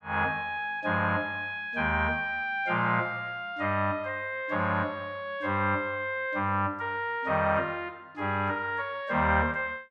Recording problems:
none

